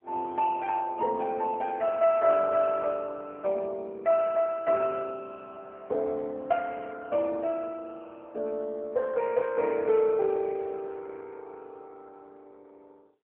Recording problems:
telephone audio; 300 Hz to 3.3 kHz, AMR-NB

